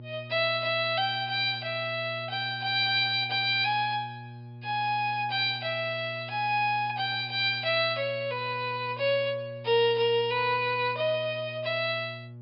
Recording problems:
low-pass filter; nothing above 5.5 kHz
hum; 60 Hz, harmonics up to 600 Hz, SNR 17 dB

